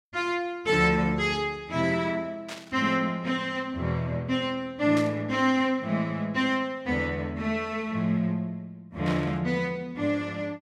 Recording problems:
static burst; at 2.5 s, at 5 s and at 9 s; peak -6 dB vs average level

